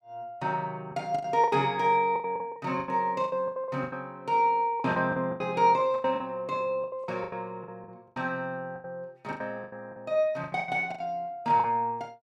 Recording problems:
lost packets; 16% of the sound replaced, filled with the last packet

